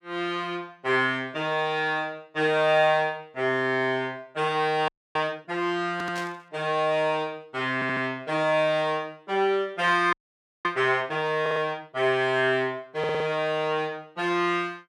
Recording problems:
frozen audio; at 5 s and at 10 s for 0.5 s
stutter; 4 times, first at 6 s
burst of static; at 6 s; peak -9 dB vs average level

